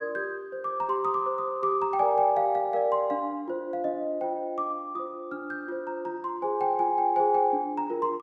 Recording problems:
none

